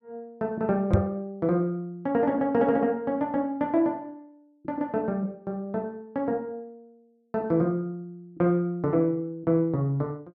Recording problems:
microphone thump; at 1 s; peak +9 dB vs average level

